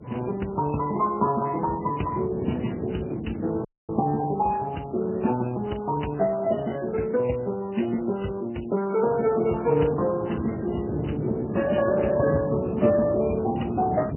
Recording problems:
lossy compression; Speex, then MP3, log-spectral distance 8 dB, nothing above 3 kHz
wind on the microphone; below 340 Hz, SNR 9 dB
audio cutting out; at 3.5 s

